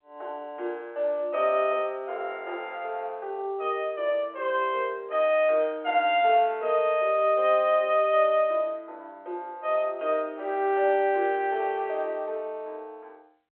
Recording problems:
telephone audio; 320 Hz to 3.4 kHz, G.711

